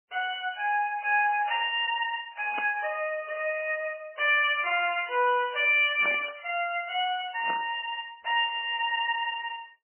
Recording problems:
lossy compression; MP3, log-spectral distance 5 dB, nothing above 2.5 kHz
static burst; at 2.5 s, at 6 s and at 7.5 s; peak -3 dB vs average level

